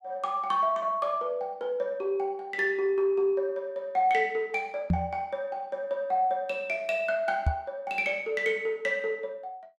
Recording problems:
microphone bump; at 5 s and at 7.5 s; peak +6 dB vs average level

